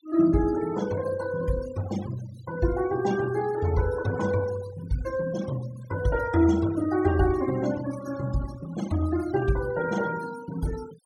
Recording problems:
noise reduction artefacts; signal-to-artefact ratio 16 dB

